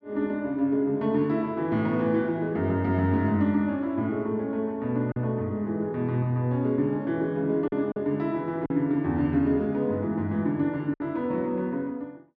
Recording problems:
lost packets; 1.8% of the sound replaced, filled with silence

